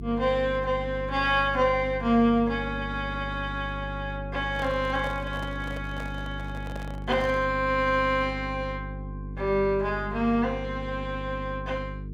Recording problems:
hum; 50 Hz, harmonics up to 450 Hz, SNR 10 dB
handling noise; from 4.5 to 7.5 s; peak -7 dB vs average level

